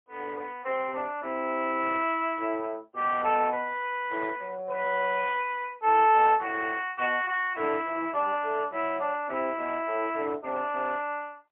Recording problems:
phone line; 340 Hz to 3.3 kHz, AMR-NB, then MP3

